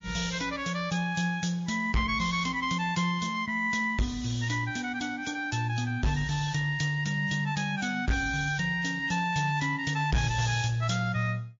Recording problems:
codec artefacts; MP3, log-spectral distance 5 dB, nothing above 6.9 kHz
distortion; hard clipping, signal-to-distortion ratio 11 dB

